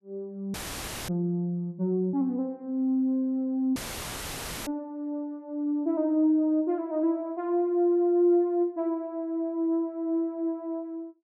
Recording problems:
dropout; at 0.5 s for 0.5 s and at 4 s for 1 s; filled with static

